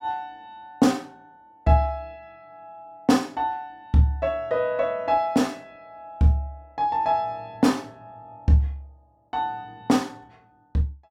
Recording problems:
none

